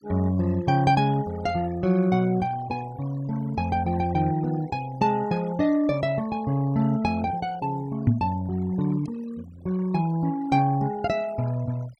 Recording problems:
noise reduction artefacts; signal-to-artefact ratio 20 dB
knock on the microphone; at 8 s; peak +8 dB vs average level

